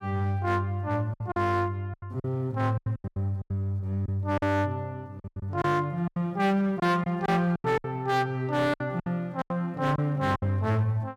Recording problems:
distortion; hard clipping, uneven, signal-to-distortion ratio 12 dB
packet loss; 12% of the sound replaced, filled with silence

